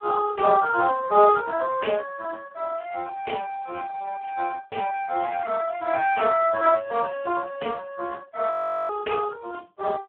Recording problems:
telephone audio; 280 Hz to 2.1 kHz, Speex
frozen audio; at 8.5 s

